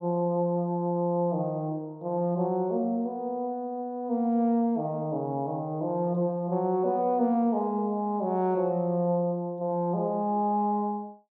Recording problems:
none

